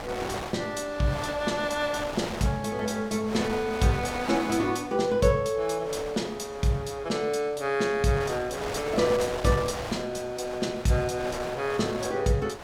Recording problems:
wind noise; below 2.1 kHz, SNR 10 dB

